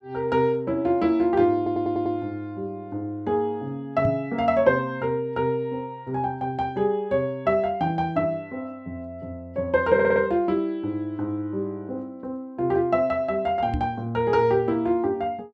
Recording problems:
stutter; at 1.5 s and at 10 s
microphone bump; at 4 s and at 14 s; peak +1 dB vs average level

